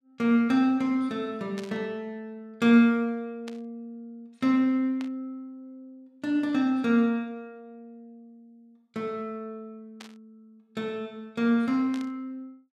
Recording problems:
static burst; 5 times, first at 1.5 s; peak -11 dB vs average level

